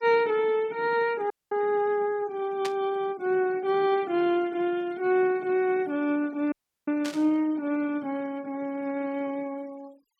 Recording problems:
noise reduction artefacts; signal-to-artefact ratio 25 dB
dropout; at 1.5 s and at 6.5 s
static burst; at 2.5 s and at 7 s; peak -4 dB vs average level

